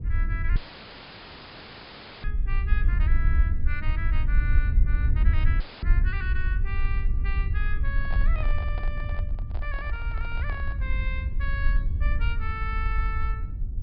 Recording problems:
treble missing; nothing above 5.2 kHz
rumble; below 64 Hz, SNR -9 dB
dropout; at 0.5 s for 1.5 s and at 5.5 s; filled with static
microphone handling noise; from 8 to 11 s; peak 0 dB vs average level

